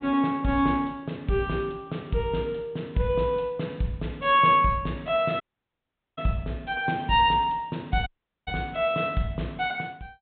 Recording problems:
low-pass filter; nothing above 4 kHz
dropout; at 5.5 s for 1 s and at 8 s

